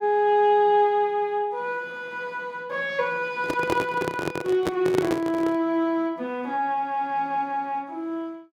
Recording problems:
handling noise; from 3.5 to 5.5 s; peak +4 dB vs average level

